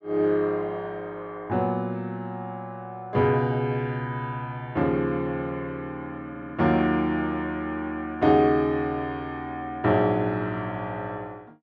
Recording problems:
audio stuttering; at 6.5 s

